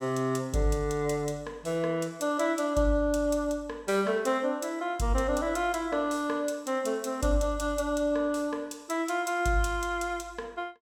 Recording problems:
none

